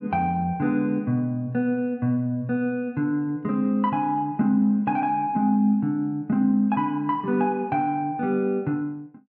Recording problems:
none

